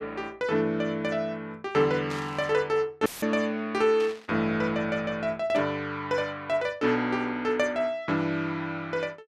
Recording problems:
burst of static; at 2 s, at 4 s and at 5.5 s; peak -9 dB vs average level
audio cutting out; at 3 s; filled with static

